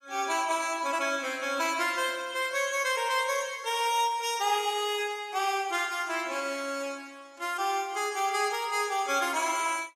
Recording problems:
codec artefacts; AAC, log-spectral distance 3 dB, nothing above 14.3 kHz

